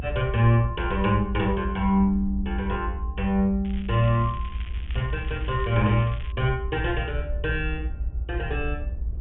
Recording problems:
treble missing; nothing above 3.4 kHz
rumble; below 70 Hz, strongest tone 58 Hz, SNR 7 dB
crackling; from 3.5 to 6.5 s; loose cable, SNR 20 dB

